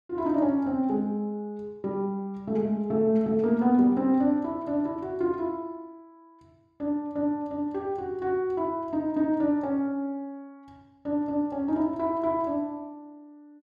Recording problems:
none

